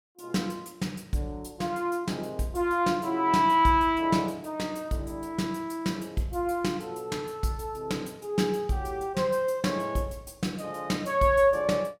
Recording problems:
none

